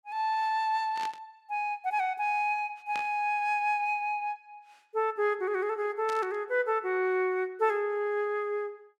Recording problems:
static burst; at 1 s, at 3 s and at 6 s; peak -7 dB vs average level

